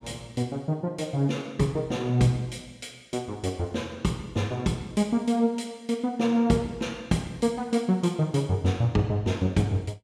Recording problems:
none

